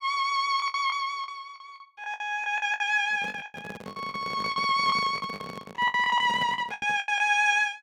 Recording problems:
lost packets; 16% of the sound replaced, filled with the last packet
microphone handling noise; from 3 to 7 s; peak -8 dB vs average level

